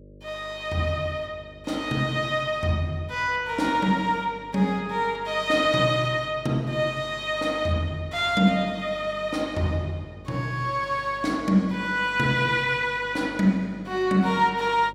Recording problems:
mains hum; 50 Hz, harmonics up to 600 Hz, SNR 22 dB

